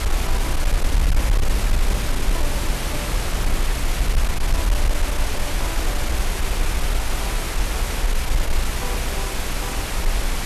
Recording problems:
distortion; soft clipping, signal-to-distortion ratio 5 dB
electrical hum; 60 Hz, harmonics up to 600 Hz, SNR 2 dB
hiss; slope -3 dB per octave, SNR -9 dB
low-frequency rumble; below 66 Hz, SNR -11 dB
wind noise; below 390 Hz, SNR 3 dB

